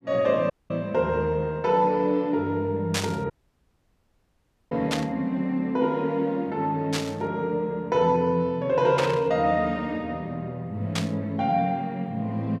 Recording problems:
audio cutting out; at 0.5 s and at 3.5 s for 1.5 s
static burst; 5 times, first at 3 s; peak +2 dB vs average level

